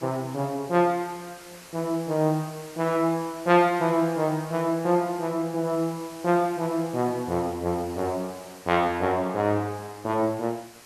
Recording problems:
background hiss; slope -1 dB per octave, SNR 20 dB

